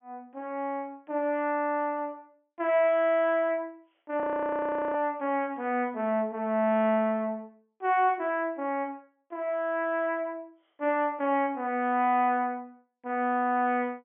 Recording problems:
low-pass filter; nothing above 3.4 kHz
frozen audio; at 4 s for 0.5 s

